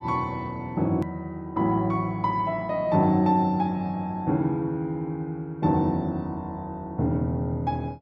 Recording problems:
click at an edit; at 1 s

